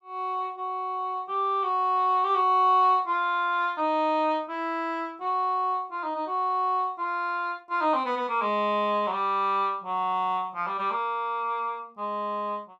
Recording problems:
none

